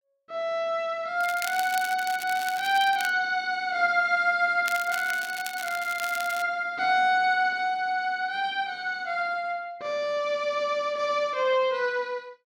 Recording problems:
crackle; from 1 to 3 s and from 4.5 to 6.5 s; loose cable, SNR 12 dB

